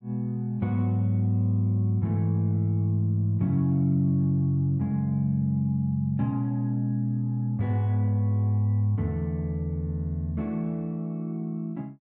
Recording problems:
none

